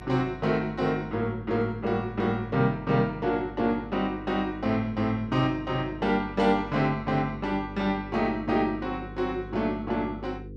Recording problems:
electrical hum; 50 Hz, harmonics up to 500 Hz, SNR 15 dB

